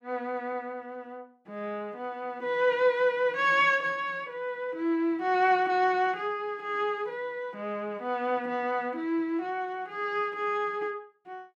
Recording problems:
none

